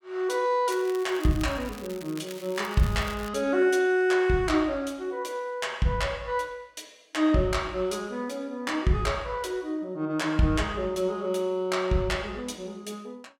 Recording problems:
crackling; from 0.5 to 3.5 s; loose cable, SNR 18 dB

